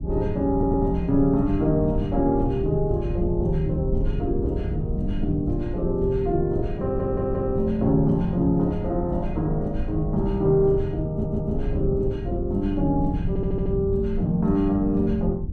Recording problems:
rumble; below 120 Hz, SNR 6 dB
stutter; 4 times, first at 0.5 s

